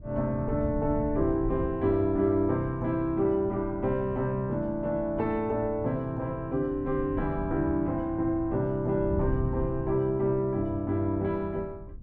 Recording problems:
wind on the microphone; below 110 Hz, SNR 12 dB

